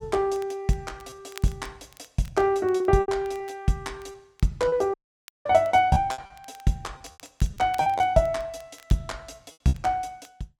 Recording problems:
crackle; vinyl, SNR 27 dB
packet loss; 7% of the sound replaced, filled with repeated pitch periods
audio cutting out; at 5 s for 0.5 s

